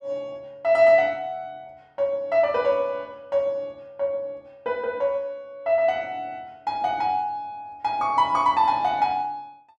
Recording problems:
none

